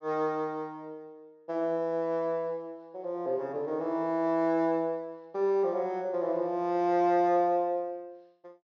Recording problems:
low-pass filter; nothing above 7.1 kHz

